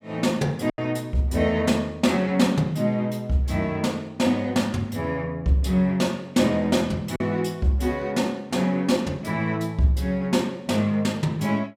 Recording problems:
packet loss; 1% of the sound replaced, filled with silence

